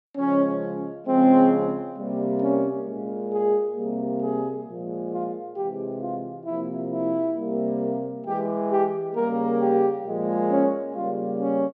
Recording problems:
none

